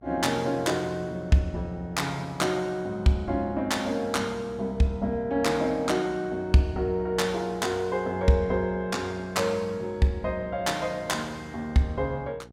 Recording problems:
hum; 60 Hz, harmonics up to 900 Hz, SNR 23 dB

